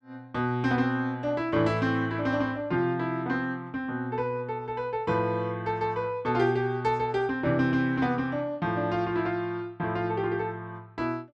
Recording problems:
none

